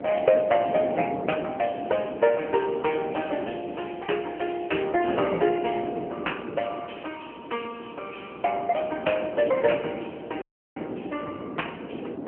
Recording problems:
phone line; 300 Hz to 3.1 kHz, AMR-NB
wind noise; below 510 Hz, SNR 9 dB
dropout; at 10 s

